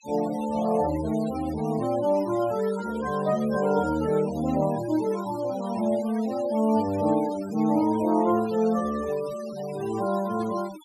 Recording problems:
denoising artefacts; signal-to-artefact ratio 18 dB

